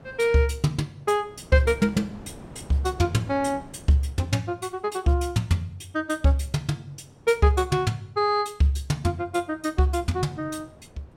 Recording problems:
wind on the microphone; below 510 Hz, SNR 22 dB

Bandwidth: 16.5 kHz